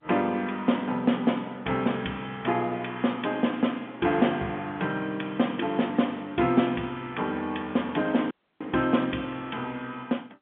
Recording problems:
telephone audio; 150 Hz to 3.5 kHz, G.711
dropout; at 8.5 s

